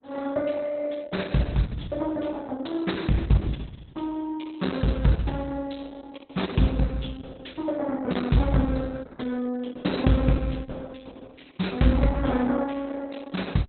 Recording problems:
lossy compression; Opus, log-spectral distance 5 dB, nothing above 4.1 kHz

